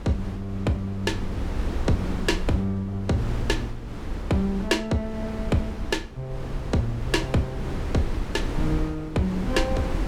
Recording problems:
wind on the microphone; below 220 Hz, SNR 5 dB

